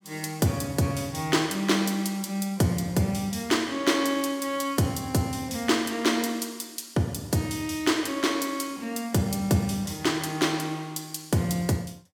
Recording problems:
none

